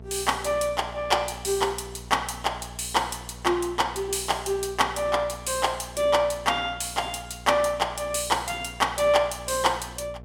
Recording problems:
electrical hum; 60 Hz, harmonics up to 900 Hz, SNR 18 dB

